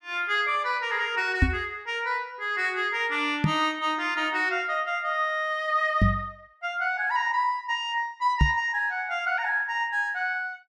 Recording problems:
knock on the microphone; 4 times, first at 1.5 s; peak +8 dB vs average level

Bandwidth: 13.5 kHz